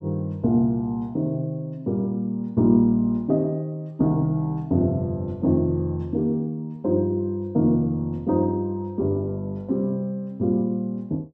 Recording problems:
none

